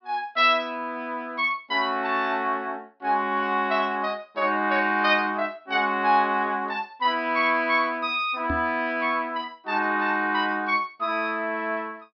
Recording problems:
treble missing; nothing above 5.5 kHz
knock on the microphone; at 8.5 s; peak -2 dB vs average level

